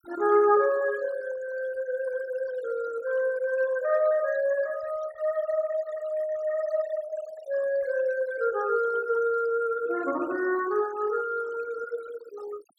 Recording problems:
noise reduction artefacts; signal-to-artefact ratio 20 dB

